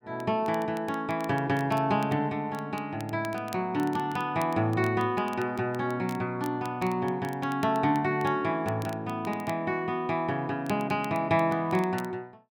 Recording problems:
crackle; vinyl, SNR 22 dB

